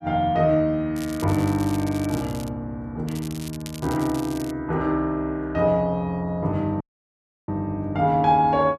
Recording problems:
crackle; from 1 to 2.5 s and from 3 to 4.5 s; loose cable, SNR 17 dB
dropout; at 7 s for 0.5 s

